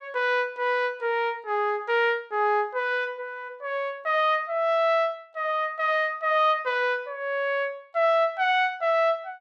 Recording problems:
none

